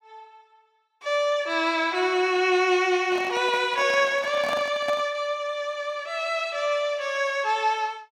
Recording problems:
handling noise; from 3 to 5 s; peak -4 dB vs average level

